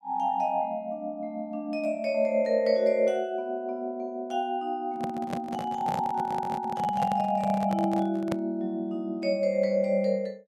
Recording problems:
handling noise; from 5 to 8.5 s; peak -1 dB vs average level

